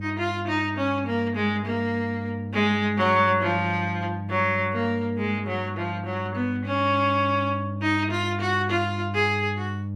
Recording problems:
hum; 50 Hz, harmonics up to 600 Hz, SNR 8 dB

